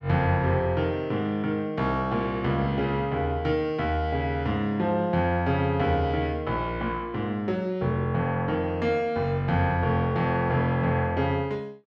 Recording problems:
none

